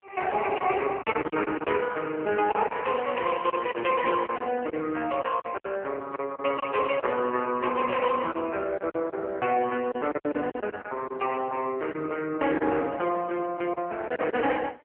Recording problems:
telephone audio; 280 Hz to 3.1 kHz, AMR-NB
packet loss; 7% of the sound replaced, filled with silence

